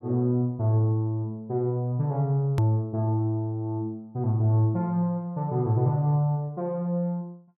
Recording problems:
hard cut with a click; at 2.5 s

